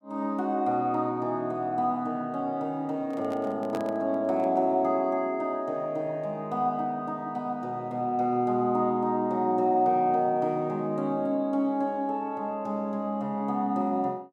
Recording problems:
microphone handling noise; from 3 to 4.5 s; peak -4 dB vs average level

